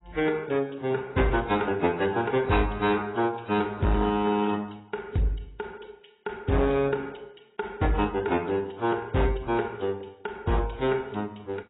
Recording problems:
lossy codec; AAC, then AAC, log-spectral distance 5 dB, nothing above 3.9 kHz
distorted audio; hard clipping, signal-to-distortion ratio 12 dB

